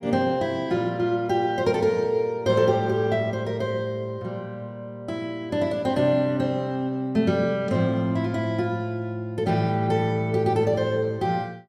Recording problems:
none

